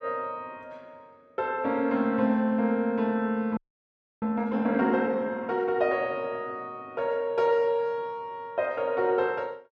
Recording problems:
audio freezing; at 3.5 s for 0.5 s

